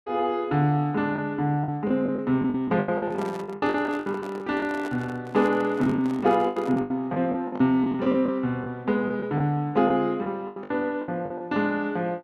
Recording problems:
packet loss; 13% of the sound replaced, filled with the last packet
handling noise; from 3 to 7 s; peak -8 dB vs average level

